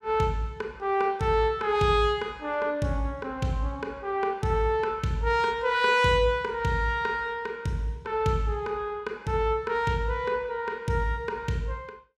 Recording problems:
none

